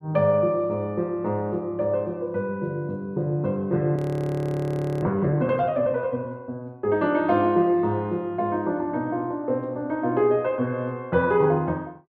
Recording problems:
frozen audio; at 4 s for 1 s

